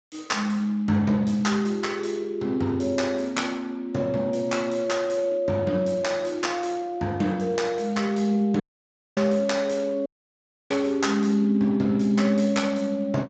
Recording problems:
lossy codec; Speex, log-spectral distance 3 dB, nothing above 7.6 kHz
audio cutting out; at 8.5 s for 0.5 s and at 10 s for 0.5 s

